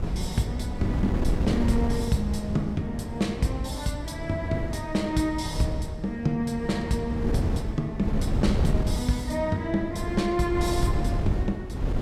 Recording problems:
wind noise; below 190 Hz, SNR 3 dB

